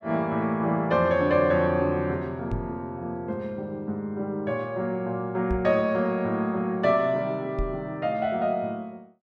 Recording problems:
knock on the microphone; at 2.5 s, at 5.5 s and at 7.5 s; peak -1 dB vs average level

